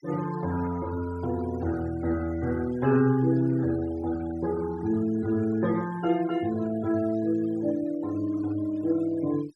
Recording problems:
noise reduction artefacts; signal-to-artefact ratio 19 dB

